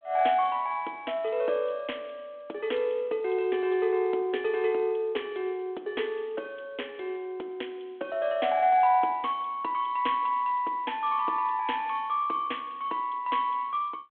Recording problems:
phone line; 280 Hz to 3.4 kHz, G.726

